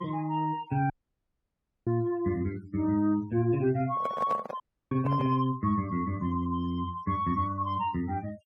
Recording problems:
denoising artefacts; signal-to-artefact ratio 22 dB
dropout; at 1 s for 1 s and at 4.5 s
microphone handling noise; from 4 to 5.5 s; peak -2 dB vs average level

